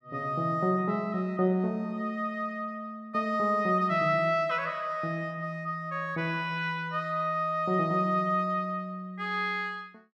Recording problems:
none

